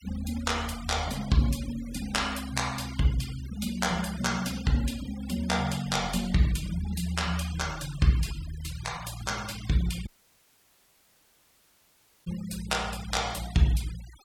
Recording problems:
noise reduction artefacts; signal-to-artefact ratio 15 dB
dropout; at 10 s for 2 s

